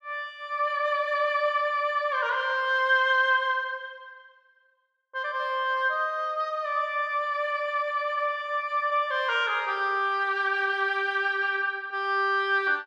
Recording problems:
none

